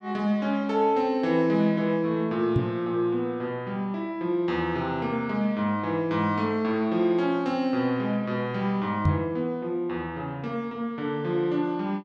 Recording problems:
microphone thump; at 2.5 s and at 9 s; peak +7 dB vs average level

